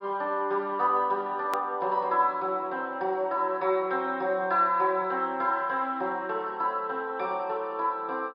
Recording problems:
treble missing; nothing above 5.5 kHz
hard cut with a click; at 1.5 s

